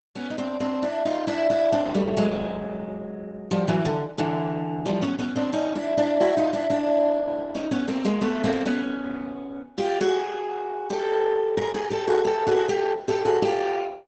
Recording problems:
codec artefacts; Opus, log-spectral distance 4 dB, nothing above 8 kHz
static burst; at 8.5 s; peak -13 dB vs average level

